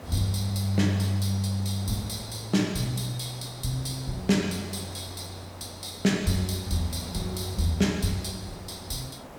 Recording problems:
background hiss; SNR 15 dB

